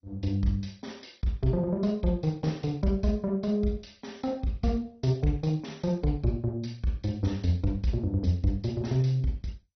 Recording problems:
codec artefacts; MP2, log-spectral distance 3 dB, nothing above 6 kHz

